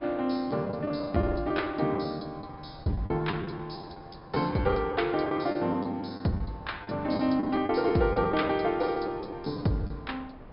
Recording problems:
treble cut off; nothing above 5.5 kHz
wind on the microphone; below 660 Hz, SNR 22 dB
packet loss; 13% of the sound replaced, filled with the last packet

